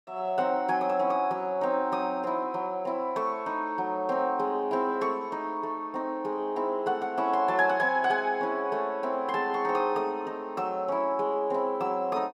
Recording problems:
none

